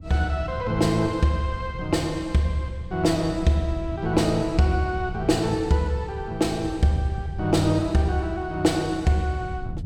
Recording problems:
wind on the microphone; below 130 Hz, SNR 13 dB

